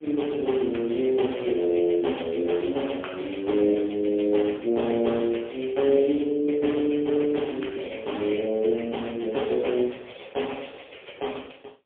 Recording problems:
telephone audio; 240 Hz to 3.4 kHz, AMR-NB, then MP3

